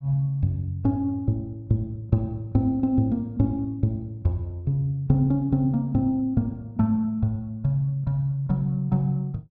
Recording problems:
none

